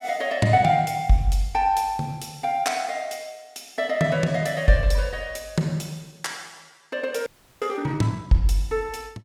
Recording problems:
audio freezing; at 7.5 s

